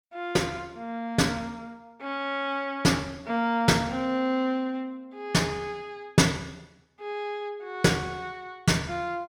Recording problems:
none

